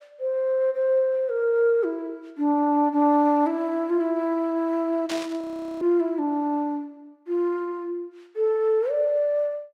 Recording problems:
burst of static; at 5 s; peak -5 dB vs average level
audio freezing; at 5.5 s

